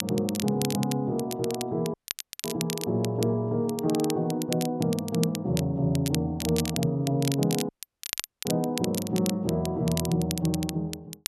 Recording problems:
crackling; vinyl, SNR 8 dB
dropout; at 2 s for 0.5 s and at 7.5 s for 1 s

